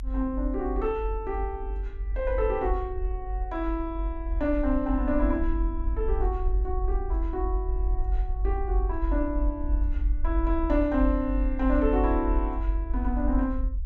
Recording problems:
rumble; below 50 Hz, strongest tone 46 Hz, SNR 1 dB

